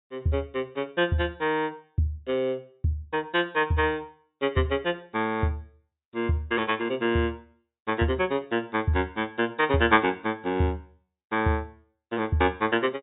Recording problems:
low-pass filter; nothing above 4 kHz

